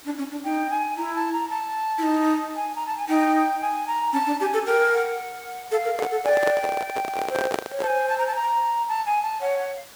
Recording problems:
hiss; slope -1 dB per octave, SNR 20 dB
handling noise; from 6 to 8 s; peak +2 dB vs average level

